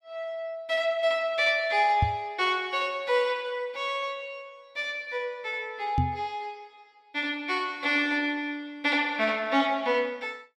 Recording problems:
knock on the microphone; at 2 s and at 6 s; peak +5 dB vs average level

